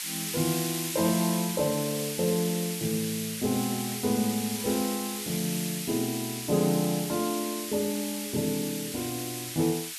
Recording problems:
hiss; SNR 4 dB

